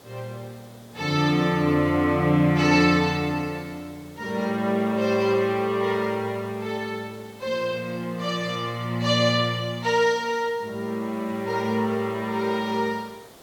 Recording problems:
background hiss; SNR 24 dB

